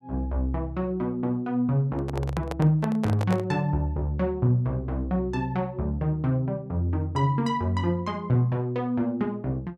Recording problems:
handling noise; from 2 to 3.5 s; peak -3 dB vs average level

